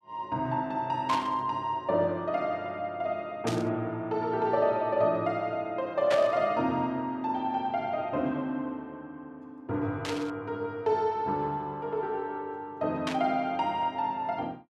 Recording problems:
burst of static; 5 times, first at 1 s; peak 0 dB vs average level

